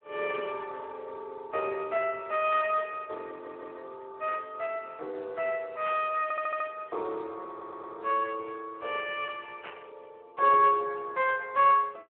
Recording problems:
phone line; 340 Hz to 3.1 kHz, Speex
static burst; 4 times, first at 2.5 s; peak -9 dB vs average level
stutter; at 3.5 s, at 6 s and at 7.5 s

